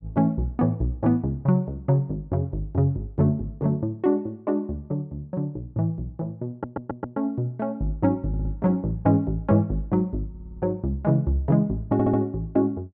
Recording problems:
stutter; 4 times, first at 6.5 s

